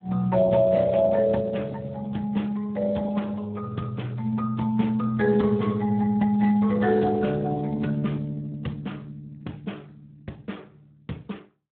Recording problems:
telephone audio; 86 Hz to 3.7 kHz, Speex

